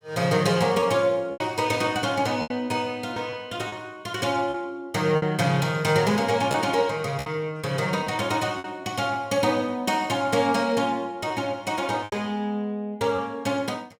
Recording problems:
lost packets; 5% of the sound replaced, filled with repeated pitch periods

